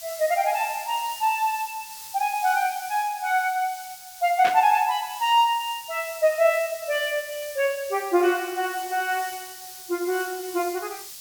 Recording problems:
background hiss; slope +4 dB per octave, SNR 14 dB
static burst; at 4.5 s; peak -1 dB vs average level

